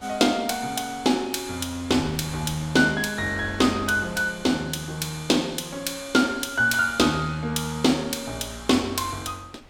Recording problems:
wind on the microphone; below 1.5 kHz, SNR 22 dB

